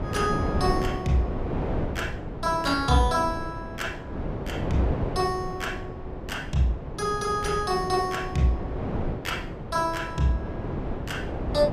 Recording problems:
wind on the microphone; below 450 Hz, SNR 5 dB

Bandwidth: 15 kHz